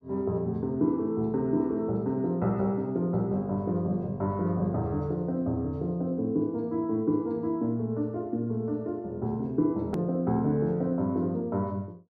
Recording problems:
hard cut with a click; at 10 s

